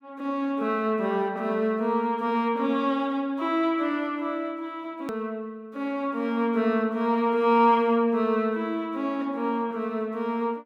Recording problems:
click at an edit; at 5 s

